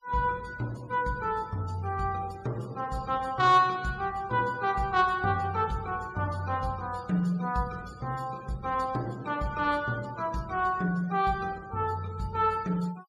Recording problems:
denoising artefacts; signal-to-artefact ratio 23 dB

